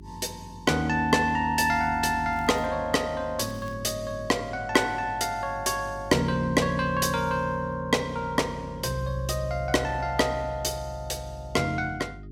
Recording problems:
mains hum; 50 Hz, harmonics up to 400 Hz, SNR 19 dB
crackling; at 2.5 s and at 3.5 s; loose cable, SNR 29 dB

